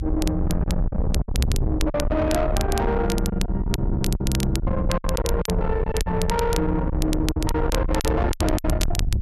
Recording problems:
distortion; soft clipping, signal-to-distortion ratio 7 dB
low-frequency rumble; below 130 Hz, SNR 2 dB
crackling; vinyl, SNR 11 dB
packet loss; 10% of the sound replaced, filled with silence

